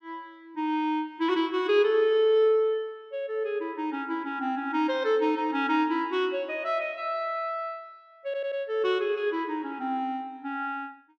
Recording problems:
audio stuttering; at 8.5 s

